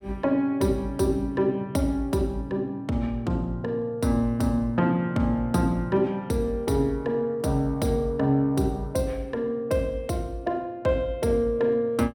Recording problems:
none

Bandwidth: 17 kHz